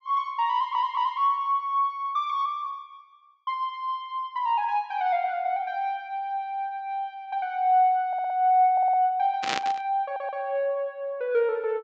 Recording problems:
treble cut off; nothing above 8 kHz
audio stuttering; 4 times, first at 0.5 s
static burst; at 9.5 s; peak +2 dB vs average level

